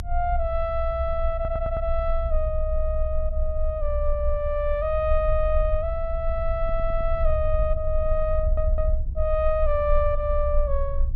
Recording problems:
rumble; below 62 Hz, strongest tone 20 Hz, SNR 2 dB
stutter; at 1.5 s, at 6.5 s and at 8.5 s

